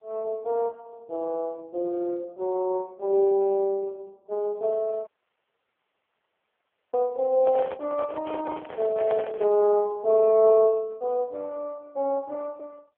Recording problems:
phone line; 320 Hz to 2.2 kHz, AMR-NB
dropout; at 5 s for 2 s
handling noise; from 7.5 to 9.5 s; peak -5 dB vs average level

